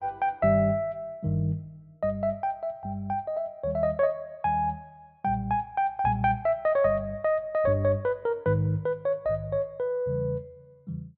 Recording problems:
none

